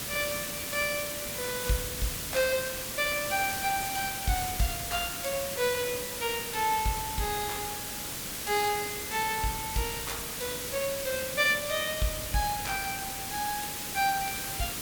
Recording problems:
background hiss; SNR 2 dB

